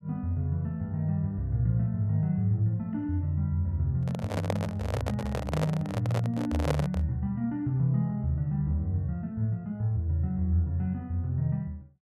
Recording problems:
microphone handling noise; from 4 to 7 s; peak +4 dB vs average level

